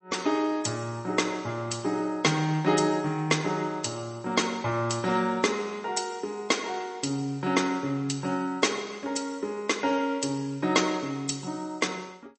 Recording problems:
codec artefacts; MP3, log-spectral distance 4 dB, nothing above 8.2 kHz

